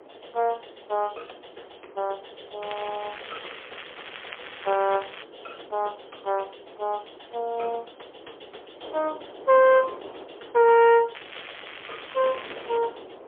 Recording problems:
phone line; 320 Hz to 3.4 kHz, AMR-NB, then MP3
wind noise; below 750 Hz, SNR 21 dB
crackle; from 2.5 to 5 s and from 11 to 13 s; loose cable, SNR 15 dB

